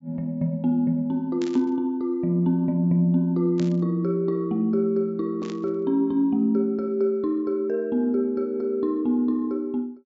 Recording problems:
treble missing; nothing above 8 kHz
burst of static; at 1.5 s, at 3.5 s and at 5.5 s; peak -12 dB vs average level

